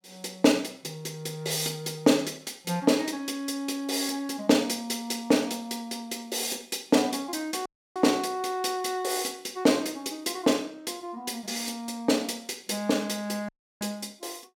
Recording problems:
audio cutting out; at 7.5 s and at 13 s

